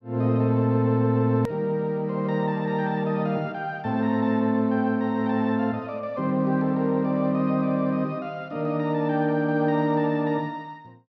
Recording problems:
hard cut with a click; at 1.5 s

